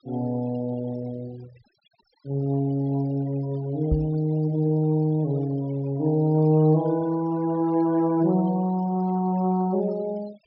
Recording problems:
low-pass filter; nothing above 5.5 kHz
denoising artefacts; signal-to-artefact ratio 23 dB
microphone thump; at 4 s; peak +3 dB vs average level

